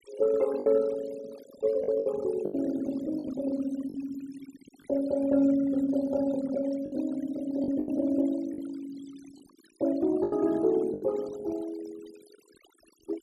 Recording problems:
denoising artefacts; signal-to-artefact ratio 19 dB
packet loss; 6% of the sound replaced, filled with the last packet

